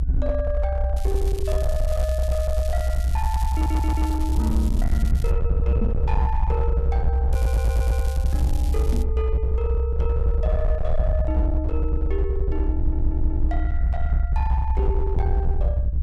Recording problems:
distorted audio; hard clipping, signal-to-distortion ratio 10 dB
rumble; below 68 Hz, SNR -7 dB
crackling; from 1 to 5.5 s and from 7.5 to 9 s; loose cable, SNR 12 dB
audio stuttering; at 3.5 s, at 7.5 s and at 13 s
microphone bump; at 6 s and at 9 s; peak +7 dB vs average level

